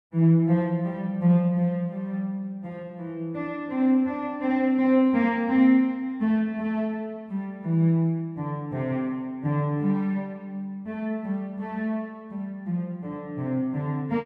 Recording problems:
none

